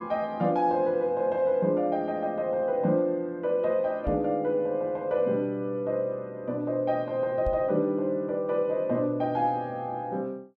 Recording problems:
knock on the microphone; at 4 s and at 7.5 s; peak -2 dB vs average level

